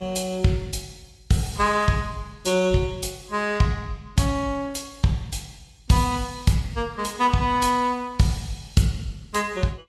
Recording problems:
codec artefacts; Vorbis, log-spectral distance 3 dB, nothing above 12.3 kHz

